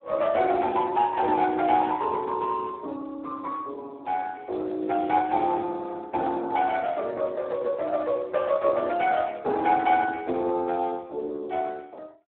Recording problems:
phone line; 260 Hz to 3 kHz, Speex

